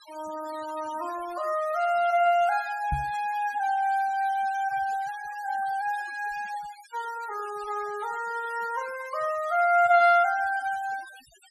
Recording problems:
noise reduction artefacts; signal-to-artefact ratio 20 dB
knock on the microphone; at 3 s; peak -1 dB vs average level

